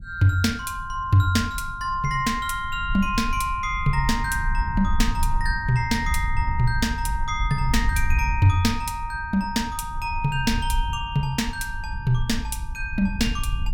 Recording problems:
rumble; below 68 Hz, SNR 6 dB

